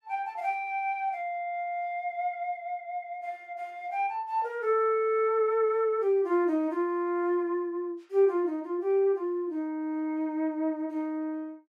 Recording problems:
none

